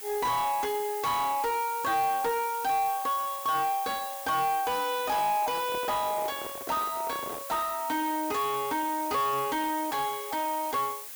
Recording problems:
distortion; soft clipping, signal-to-distortion ratio 7 dB
background hiss; slope +2 dB per octave, SNR 9 dB
microphone handling noise; from 5 to 7.5 s; peak -6 dB vs average level

